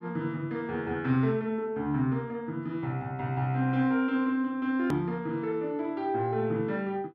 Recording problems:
hard cut with a click; at 5 s

